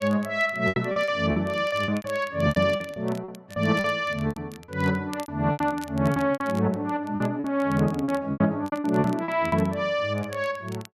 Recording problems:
crackling; vinyl, SNR 23 dB
packet loss; 14% of the sound replaced, filled with repeated pitch periods

